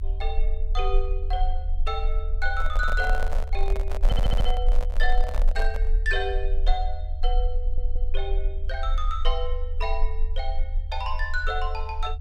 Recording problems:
low-frequency rumble; below 36 Hz, strongest tone 18 Hz, SNR -3 dB
microphone handling noise; from 2.5 to 6 s; peak 0 dB vs average level
audio stuttering; at 4 s and at 7.5 s

